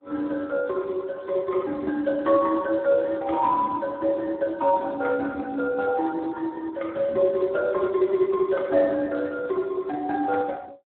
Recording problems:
phone line; 150 Hz to 2 kHz, Speex

